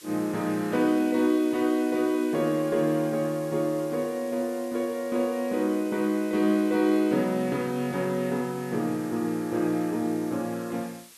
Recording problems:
background hiss; slope +2 dB per octave, SNR 21 dB

